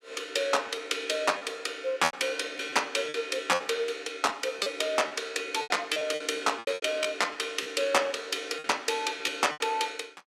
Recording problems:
lost packets; 9% of the sound replaced, filled with repeated pitch periods

